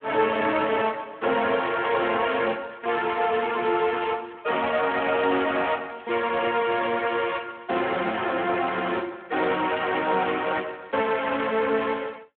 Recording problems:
telephone audio; 280 Hz to 3.3 kHz, Speex
crackle; from 5.5 to 7.5 s; loose cable, SNR 28 dB

